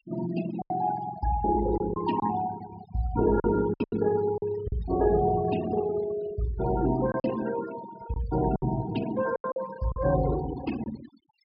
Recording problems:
low-pass filter; nothing above 5.5 kHz
noise reduction artefacts; signal-to-artefact ratio 13 dB
packet loss; 6% of the sound replaced, filled with silence

